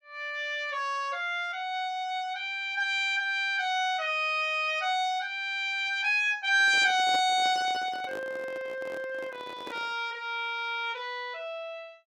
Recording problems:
microphone handling noise; from 6.5 to 10 s; peak -8 dB vs average level

